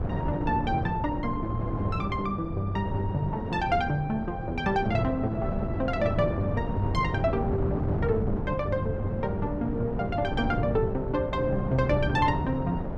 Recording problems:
wind on the microphone; below 310 Hz, SNR 3 dB

